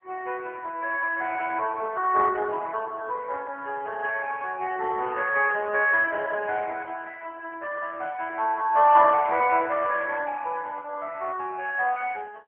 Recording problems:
telephone audio; 320 Hz to 2.9 kHz, AMR-NB

